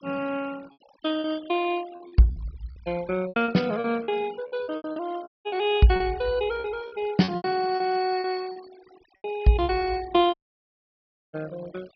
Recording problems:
treble cut off; nothing above 5.5 kHz
denoising artefacts; signal-to-artefact ratio 22 dB
packet loss; 11% of the sound replaced, filled with repeated pitch periods
dropout; at 5.5 s and at 10 s for 1 s

